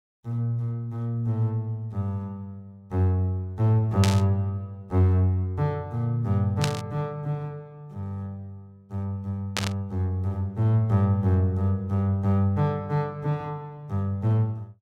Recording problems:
static burst; at 4 s, at 6.5 s and at 9.5 s; peak +3 dB vs average level

